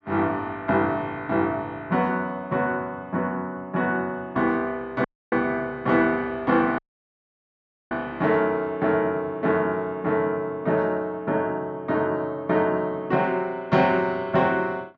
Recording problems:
dropout; at 5 s and at 7 s for 1 s

